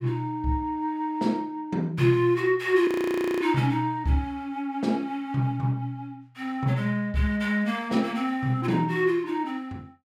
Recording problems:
audio freezing; at 3 s for 0.5 s

